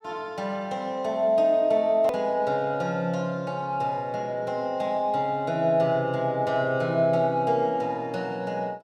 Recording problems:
edit click; at 2 s

